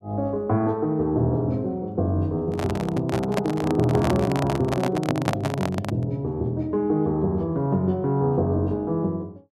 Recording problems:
handling noise; from 2.5 to 6 s; peak +4 dB vs average level

